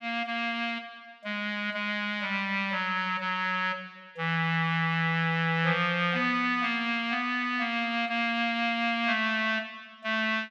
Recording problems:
none

